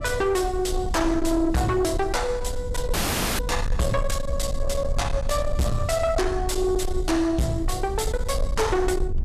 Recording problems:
distortion; soft clipping, signal-to-distortion ratio 7 dB
rumble; below 72 Hz, SNR 6 dB
audio cutting out; at 3 s

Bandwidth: 14 kHz